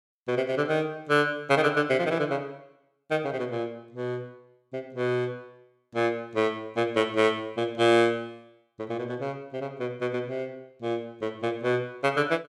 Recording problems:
none

